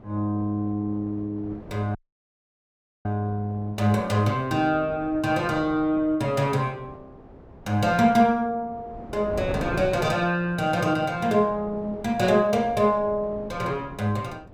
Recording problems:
wind on the microphone; below 540 Hz, SNR 17 dB
audio cutting out; at 2 s for 1 s

